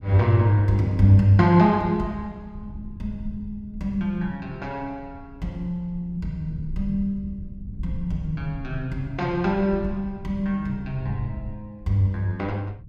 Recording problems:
low-frequency rumble; below 98 Hz, SNR 16 dB

